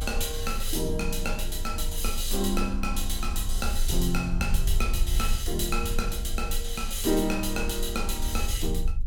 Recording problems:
low-frequency rumble; below 48 Hz, strongest tone 24 Hz, SNR 3 dB

